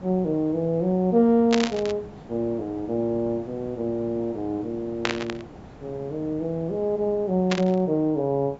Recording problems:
treble cut off; nothing above 8 kHz
background hiss; SNR 19 dB
burst of static; at 1.5 s, at 5 s and at 7.5 s; peak +4 dB vs average level

